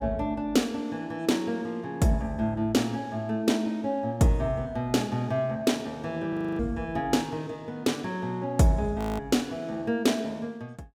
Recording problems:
audio freezing; at 6.5 s and at 9 s

